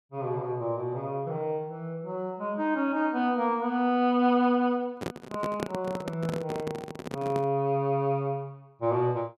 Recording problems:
microphone handling noise; from 5 to 7.5 s; peak +1 dB vs average level

